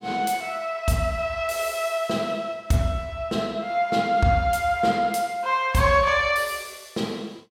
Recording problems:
none

